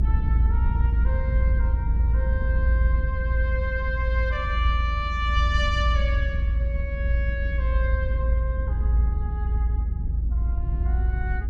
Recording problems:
low-frequency rumble; below 76 Hz, strongest tone 56 Hz, SNR -7 dB

